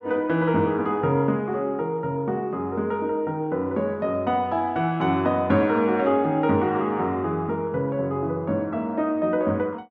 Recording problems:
none

